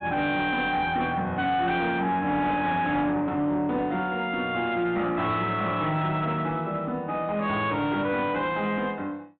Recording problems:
low-pass filter; nothing above 4 kHz
distorted audio; soft clipping, signal-to-distortion ratio 10 dB

